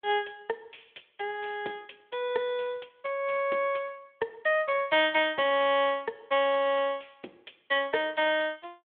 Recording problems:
phone line; 300 Hz to 3.5 kHz, Speex

